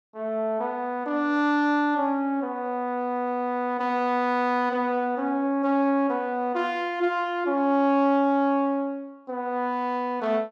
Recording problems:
none

